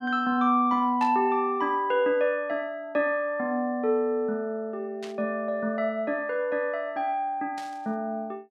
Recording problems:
static burst; at 1 s, at 5 s and at 7.5 s; peak -11 dB vs average level

